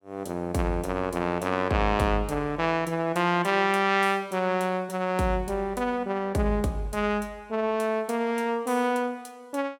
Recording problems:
none

